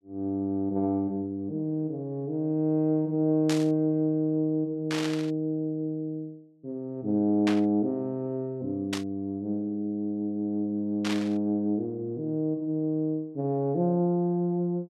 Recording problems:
static burst; 5 times, first at 3.5 s; peak 0 dB vs average level

